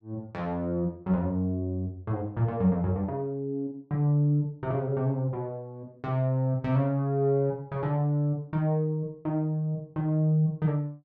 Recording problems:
none

